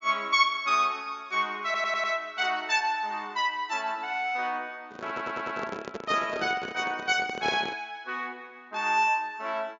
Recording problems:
treble missing; nothing above 7.3 kHz
audio stuttering; at 1.5 s and at 5 s
microphone handling noise; from 5 to 8 s; peak -1 dB vs average level

